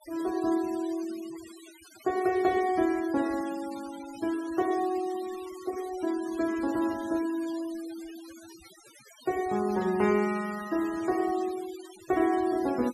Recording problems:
denoising artefacts; signal-to-artefact ratio 18 dB

